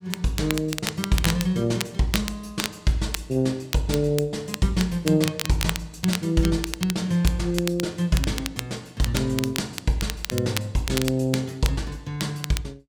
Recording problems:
crackle; vinyl, SNR 7 dB

